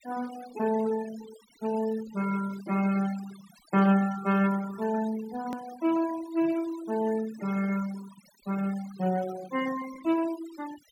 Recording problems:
denoising artefacts; signal-to-artefact ratio 16 dB
hard cut with a click; at 5.5 s

